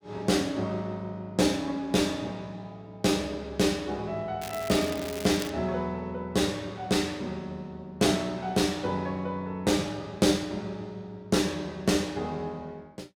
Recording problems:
crackling; from 4.5 to 5.5 s; loose cable, SNR 12 dB

